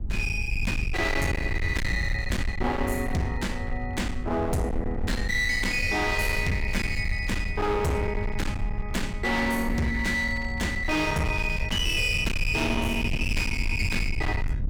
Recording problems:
distorted audio; hard clipping, signal-to-distortion ratio 7 dB
low-frequency rumble; below 120 Hz, SNR 5 dB

